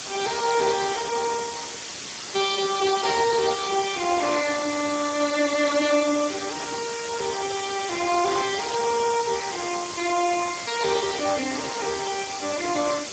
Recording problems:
lossy codec; Speex, log-spectral distance 14 dB, nothing above 7.3 kHz
hiss; slope 0 dB per octave, SNR 8 dB

